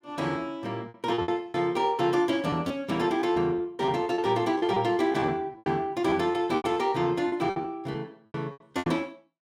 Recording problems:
lost packets; 13% of the sound replaced, filled with repeated pitch periods

